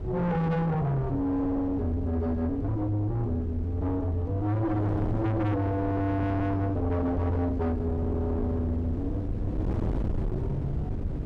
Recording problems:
distorted audio; soft clipping, signal-to-distortion ratio 6 dB
wind noise; below 240 Hz, SNR 6 dB

